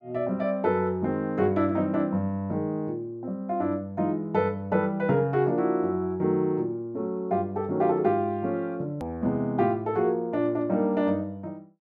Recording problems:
hard cut with a click; at 9 s

